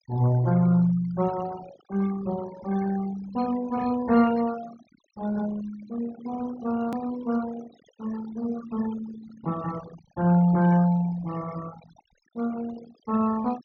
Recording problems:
low-pass filter; nothing above 6.5 kHz
noise reduction artefacts; signal-to-artefact ratio 17 dB
edit click; at 7 s

